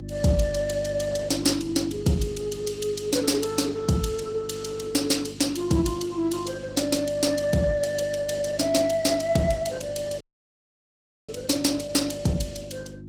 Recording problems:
lossy compression; Opus, log-spectral distance 4 dB, nothing above 18.5 kHz
mains hum; 50 Hz, harmonics up to 350 Hz, SNR 13 dB
dropout; at 10 s for 1 s

